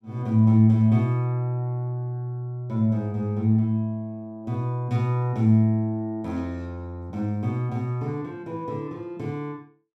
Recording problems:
none

